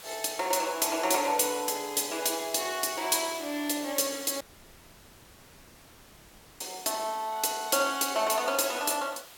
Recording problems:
hiss; slope 0 dB per octave, SNR 18 dB
dropout; at 4.5 s for 2 s

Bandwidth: 17 kHz